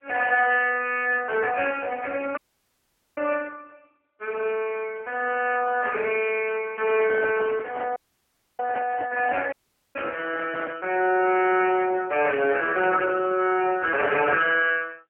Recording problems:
phone line; 240 Hz to 3 kHz, AMR-NB
dropout; at 2.5 s for 1 s, at 8 s for 0.5 s and at 9.5 s
microphone handling noise; from 7 to 11 s; peak -5 dB vs average level

